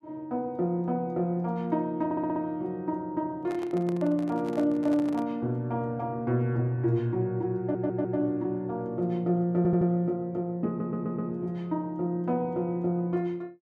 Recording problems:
stutter; 4 times, first at 2 s
handling noise; from 3.5 to 5.5 s; peak -9 dB vs average level

